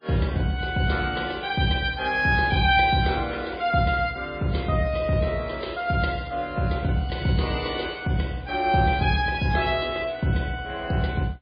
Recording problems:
lossy codec; MP3, log-spectral distance 3 dB, nothing above 5 kHz

